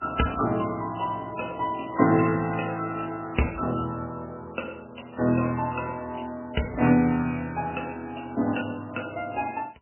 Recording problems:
lossy codec; MP3, log-spectral distance 6 dB, nothing above 3 kHz

